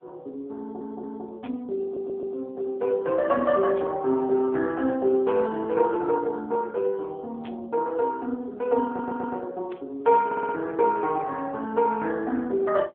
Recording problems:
telephone audio; 190 Hz to 3 kHz, AMR-NB
audio stuttering; 4 times, first at 0.5 s
burst of static; 4 times, first at 1.5 s; peak -13 dB vs average level

